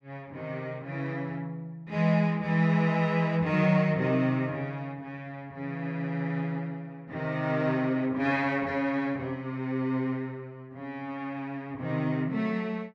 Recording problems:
none

